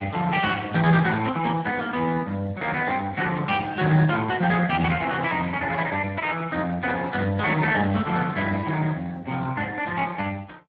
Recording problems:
lossy compression; Speex, log-spectral distance 3 dB

